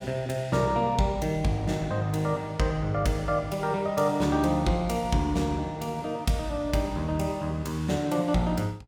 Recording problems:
none

